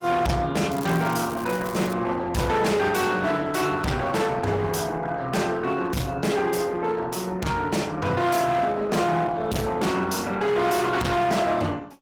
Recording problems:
lossy codec; Opus, log-spectral distance 4 dB, nothing above 19 kHz
distortion; hard clipping, signal-to-distortion ratio 7 dB
crackle; from 0.5 to 2 s; loose cable, SNR 16 dB

